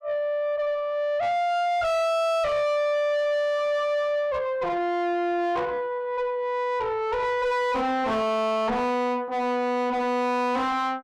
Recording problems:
distorted audio; soft clipping, signal-to-distortion ratio 6 dB

